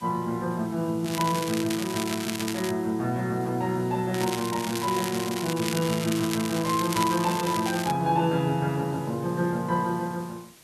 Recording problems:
hiss; slope -1 dB per octave, SNR 22 dB
crackle; from 1 to 2.5 s and from 4 to 8 s; loose cable, SNR 7 dB

